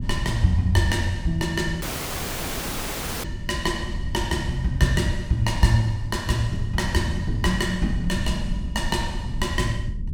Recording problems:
low-frequency rumble; below 110 Hz, SNR 7 dB
audio cutting out; at 2 s for 1.5 s

